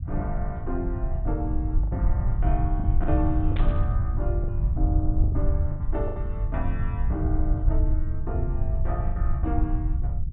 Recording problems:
treble missing; nothing above 4 kHz
rumble; below 82 Hz, SNR -6 dB
packet loss; 6% of the sound replaced, filled with the last packet
static burst; at 3.5 s; peak -2 dB vs average level

